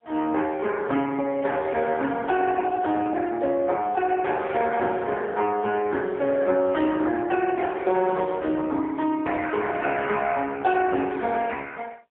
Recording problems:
phone line; 240 Hz to 3.4 kHz, AMR-NB, then MP3

